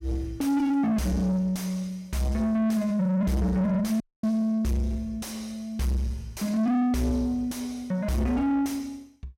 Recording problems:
distorted audio; soft clipping, signal-to-distortion ratio 7 dB
dropout; at 4 s

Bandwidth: 16 kHz